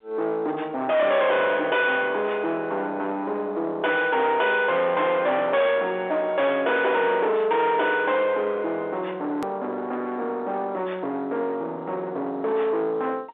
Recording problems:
phone line; 300 Hz to 3.8 kHz, G.711
distortion; soft clipping, signal-to-distortion ratio 6 dB
click at an edit; at 9.5 s

